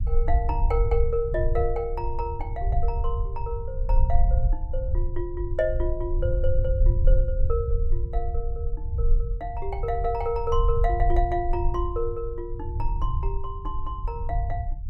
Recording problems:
rumble; below 62 Hz, SNR -2 dB

